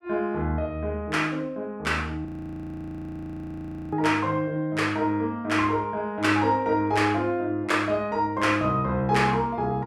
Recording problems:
audio freezing; at 2.5 s for 1.5 s

